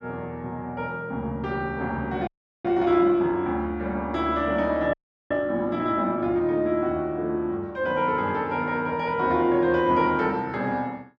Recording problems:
audio freezing; at 2.5 s and at 5 s

